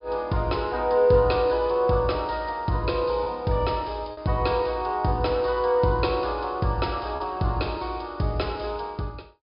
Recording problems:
treble missing; nothing above 5.5 kHz
lost packets; 1.3% of the sound replaced, filled with repeated pitch periods

